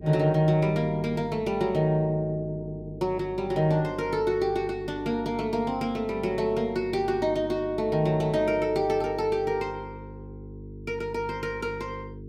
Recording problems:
hum; 50 Hz, harmonics up to 450 Hz, SNR 15 dB

